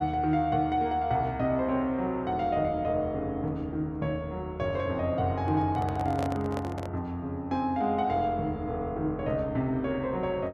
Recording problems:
handling noise; from 5.5 to 7 s; peak -2 dB vs average level

